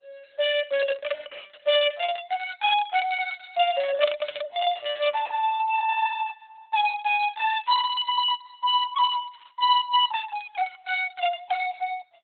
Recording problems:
codec artefacts; Opus, log-spectral distance 4 dB, nothing above 4 kHz

